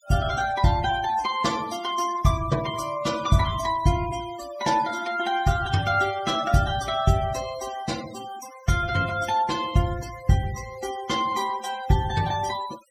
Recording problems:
denoising artefacts; signal-to-artefact ratio 15 dB

